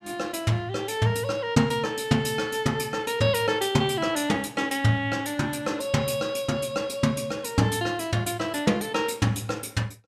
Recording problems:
none

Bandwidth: 14.5 kHz